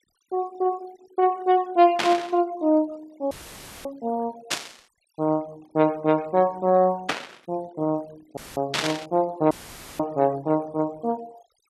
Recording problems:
noise reduction artefacts; signal-to-artefact ratio 25 dB
static burst; 4 times, first at 2 s; peak +4 dB vs average level
dropout; at 3.5 s for 0.5 s, at 8.5 s and at 9.5 s; filled with static

